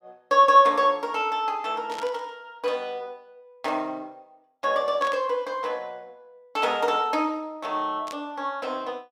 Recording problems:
burst of static; at 2 s, at 5 s and at 8 s; peak -10 dB vs average level

